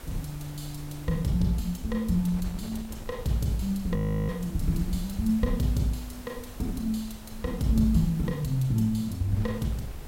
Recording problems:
hiss; slope -3 dB per octave, SNR 20 dB
wind on the microphone; below 140 Hz, SNR 16 dB
audio freezing; at 4 s

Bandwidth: 16 kHz